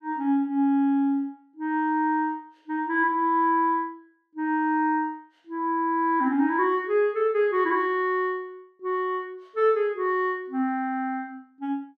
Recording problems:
none

